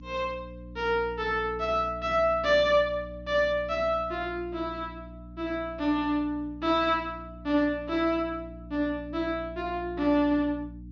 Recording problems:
hum; 60 Hz, harmonics up to 300 Hz, SNR 16 dB

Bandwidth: 7 kHz